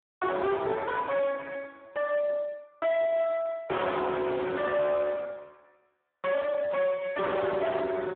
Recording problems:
telephone audio; 300 Hz to 4 kHz, Speex
distorted audio; soft clipping, signal-to-distortion ratio 6 dB

